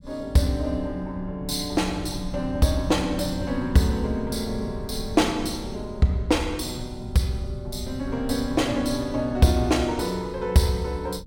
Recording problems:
low-frequency rumble; below 140 Hz, SNR 12 dB

